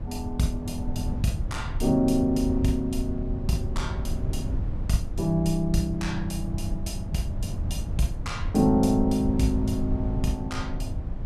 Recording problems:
rumble; below 110 Hz, SNR 5 dB

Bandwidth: 14 kHz